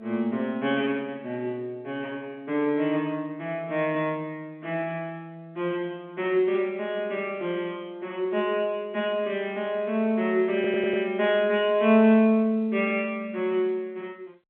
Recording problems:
phone line; 190 Hz to 3.5 kHz, G.711
audio stuttering; at 11 s

